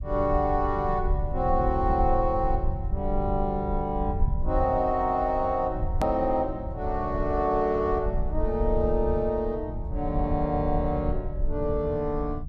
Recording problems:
rumble; below 74 Hz, SNR 6 dB
edit click; at 6 s

